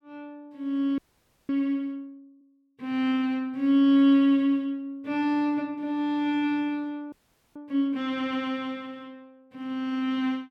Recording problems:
audio freezing; at 1 s for 0.5 s and at 7 s

